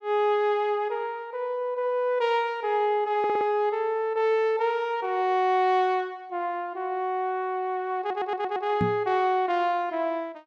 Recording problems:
stutter; at 3 s and at 8 s
knock on the microphone; at 9 s; peak +3 dB vs average level

